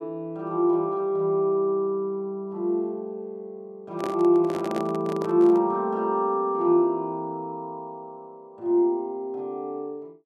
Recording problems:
handling noise; from 4 to 5.5 s; peak -4 dB vs average level

